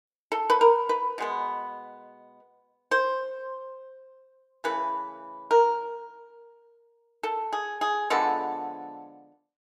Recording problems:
none

